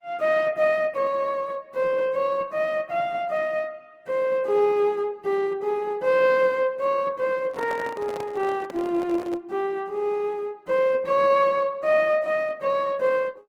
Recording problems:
lossy codec; Opus, log-spectral distance 2 dB, nothing above 17.4 kHz
microphone handling noise; from 7.5 to 9.5 s; peak -8 dB vs average level

